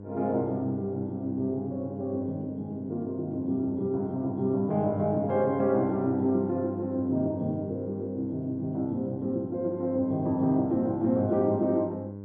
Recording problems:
electrical hum; 50 Hz, harmonics up to 1 kHz, SNR 11 dB

